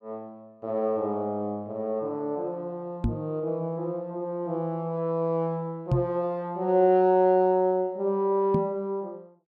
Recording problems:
microphone thump; at 3 s, at 6 s and at 8.5 s; peak +5 dB vs average level

